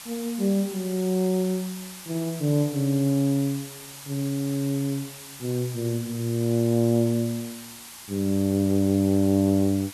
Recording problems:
background hiss; SNR 15 dB

